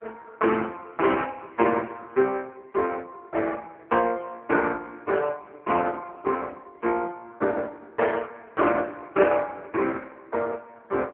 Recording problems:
phone line; 240 Hz to 3.1 kHz, AMR-NB

